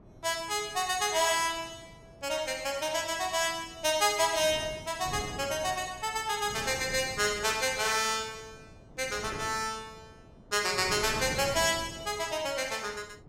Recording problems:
wind noise; below 440 Hz, SNR 17 dB

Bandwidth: 16 kHz